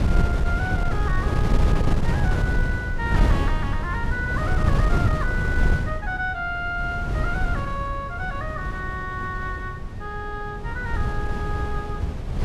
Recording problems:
wind noise; below 140 Hz, SNR -4 dB

